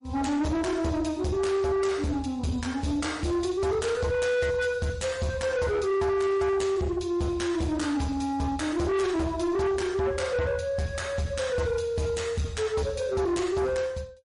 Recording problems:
lossy codec; MP3, log-spectral distance 2 dB, nothing above 10.4 kHz
distorted audio; soft clipping, signal-to-distortion ratio 7 dB

